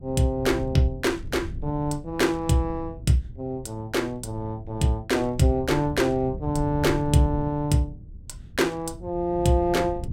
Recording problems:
wind on the microphone; below 130 Hz, SNR 13 dB

